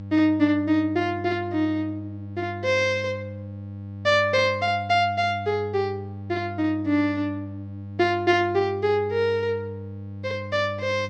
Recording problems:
hum; 50 Hz, harmonics up to 600 Hz, SNR 13 dB

